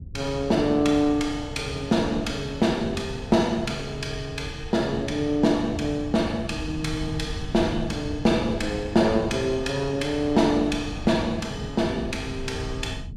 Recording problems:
wind on the microphone; below 140 Hz, SNR 12 dB

